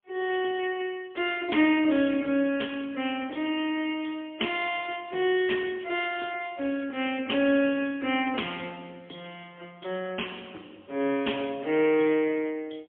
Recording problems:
telephone audio; 240 Hz to 3.3 kHz, AMR-NB, then MP3

